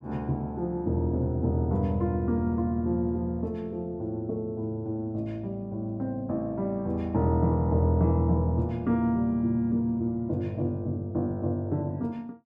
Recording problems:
none

